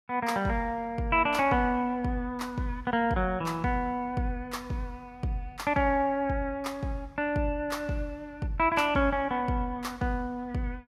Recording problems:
none

